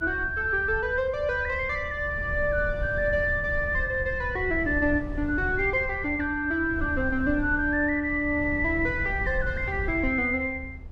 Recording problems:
low-frequency rumble; below 94 Hz, SNR 11 dB

